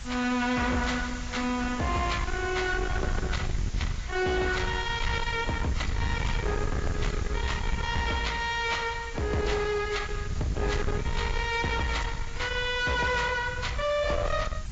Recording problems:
lossy codec; AAC, log-spectral distance 10 dB, nothing above 7.3 kHz
distortion; soft clipping, signal-to-distortion ratio 8 dB
hiss; slope 0 dB per octave, SNR 17 dB
wind noise; below 180 Hz, SNR 5 dB

